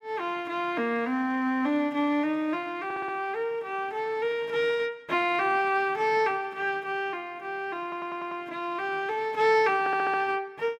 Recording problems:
audio stuttering; at 3 s, at 8 s and at 10 s

